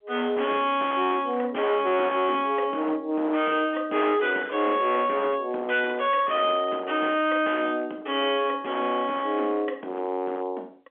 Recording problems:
telephone audio; 260 Hz to 3.4 kHz, G.711
distorted audio; hard clipping, signal-to-distortion ratio 11 dB

